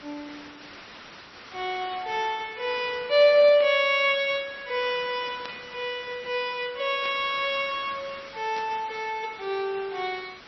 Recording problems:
codec artefacts; MP3, log-spectral distance 8 dB, nothing above 5.5 kHz
background hiss; SNR 19 dB
static burst; 4 times, first at 3.5 s; peak -9 dB vs average level

